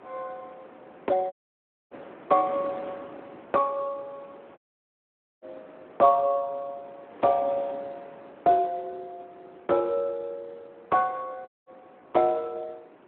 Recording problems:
telephone audio; 280 Hz to 3 kHz, Speex
wind on the microphone; below 1 kHz, SNR 21 dB
audio cutting out; at 1.5 s for 0.5 s, at 4.5 s for 1 s and at 11 s

